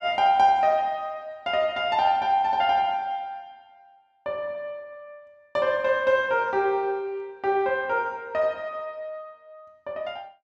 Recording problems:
none

